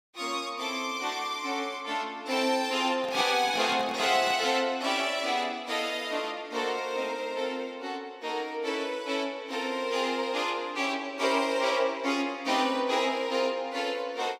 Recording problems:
microphone handling noise; from 3 to 4.5 s; peak -5 dB vs average level

